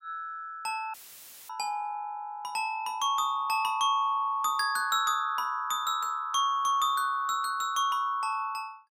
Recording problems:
dropout; at 1 s for 0.5 s; filled with static

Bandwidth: 16 kHz